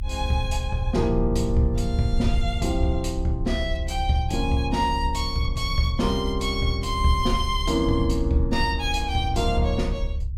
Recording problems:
low-frequency rumble; below 70 Hz, SNR 4 dB

